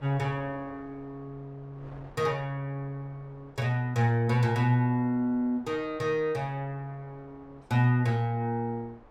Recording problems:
wind on the microphone; below 850 Hz, SNR 26 dB

